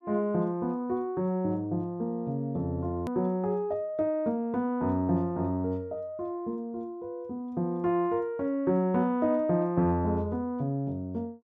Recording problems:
click at an edit; at 3 s

